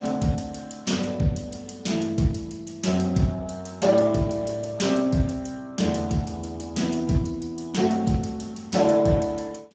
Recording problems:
lossy codec; Speex, log-spectral distance 5 dB, nothing above 7.6 kHz

